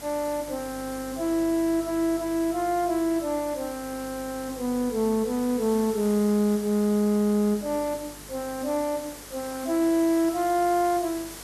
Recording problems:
electrical hum; 50 Hz, harmonics up to 450 Hz, SNR 24 dB
hiss; slope -2 dB per octave, SNR 15 dB

